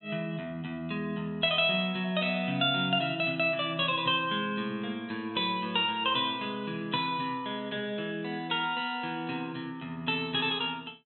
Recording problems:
low-pass filter; nothing above 4.1 kHz

